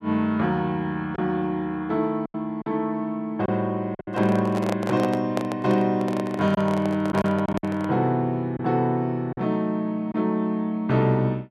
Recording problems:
lost packets; 4% of the sound replaced, filled with silence
microphone handling noise; from 4 to 8 s; peak 0 dB vs average level

